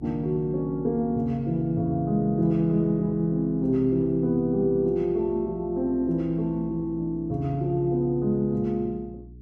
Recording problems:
electrical hum; 60 Hz, harmonics up to 420 Hz, SNR 20 dB

